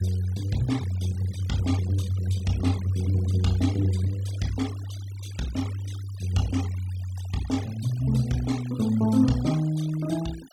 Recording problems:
denoising artefacts; signal-to-artefact ratio 18 dB

